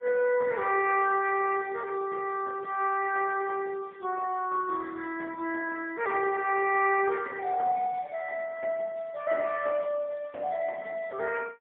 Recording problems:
telephone audio; 340 Hz to 3.5 kHz, AMR-NB, then MP3

